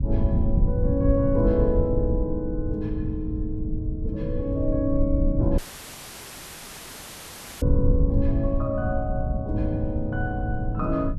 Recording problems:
rumble; below 100 Hz, SNR 0 dB
dropout; at 5.5 s for 2 s; filled with static

